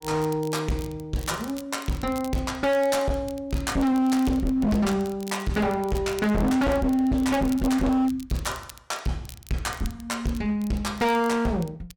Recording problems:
distorted audio; hard clipping, signal-to-distortion ratio 7 dB
crackle; vinyl, SNR 21 dB

